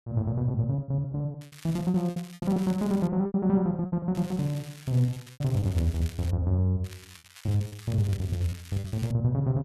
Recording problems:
lost packets; 15% of the sound replaced, filled with repeated pitch periods
crackling; from 1.5 to 3 s, from 4 to 6.5 s and from 7 to 9 s; loose cable, SNR 20 dB

